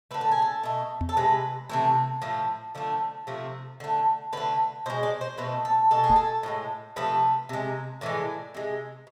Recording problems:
microphone thump; at 1 s and at 6 s; peak 0 dB vs average level

